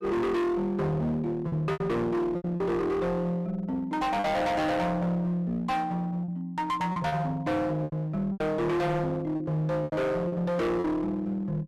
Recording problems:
distorted audio; hard clipping, uneven, signal-to-distortion ratio 5 dB
lost packets; 7% of the sound replaced, filled with repeated pitch periods

